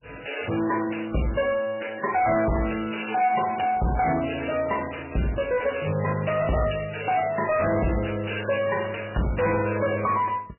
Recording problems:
lossy compression; MP3, log-spectral distance 11 dB, nothing above 2.9 kHz
distortion; soft clipping, signal-to-distortion ratio 6 dB

